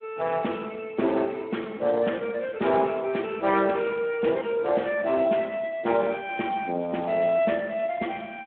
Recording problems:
telephone audio; 150 Hz to 3.3 kHz, Speex

